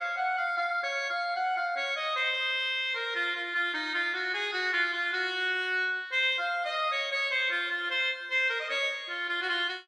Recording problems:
none

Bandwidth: 12.5 kHz